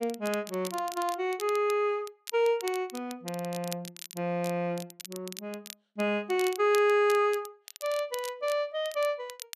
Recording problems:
crackle; vinyl, SNR 15 dB

